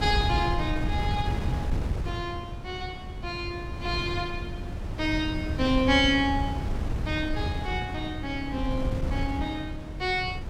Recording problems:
wind noise; below 150 Hz, SNR 3 dB

